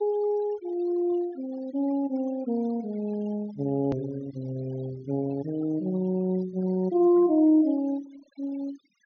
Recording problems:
low-pass filter; nothing above 6.5 kHz
denoising artefacts; signal-to-artefact ratio 23 dB
edit click; at 4 s

